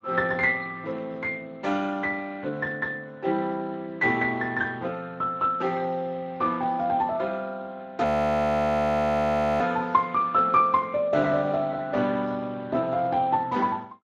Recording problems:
lossy compression; Speex, log-spectral distance 3 dB, nothing above 13.1 kHz
audio freezing; at 8 s for 1.5 s

